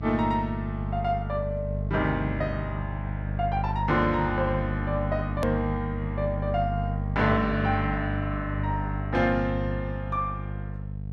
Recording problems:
hum; 50 Hz, harmonics up to 450 Hz, SNR 3 dB
edit click; at 5.5 s

